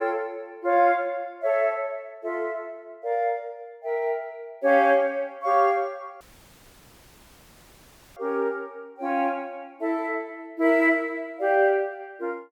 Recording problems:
dropout; at 6 s for 2 s

